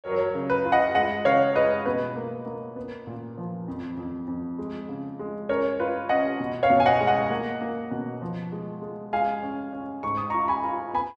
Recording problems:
none

